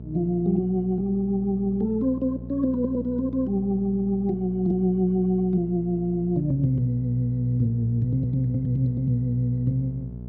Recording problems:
hum; 60 Hz, harmonics up to 660 Hz, SNR 13 dB

